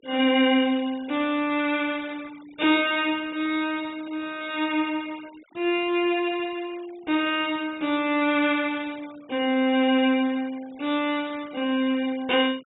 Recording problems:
low-pass filter; nothing above 4 kHz
denoising artefacts; signal-to-artefact ratio 23 dB

